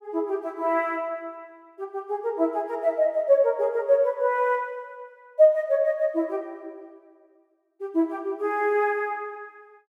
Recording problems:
none

